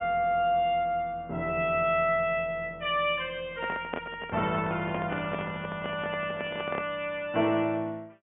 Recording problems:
treble cut off; nothing above 3.4 kHz
microphone handling noise; from 3.5 to 7 s; peak -1 dB vs average level

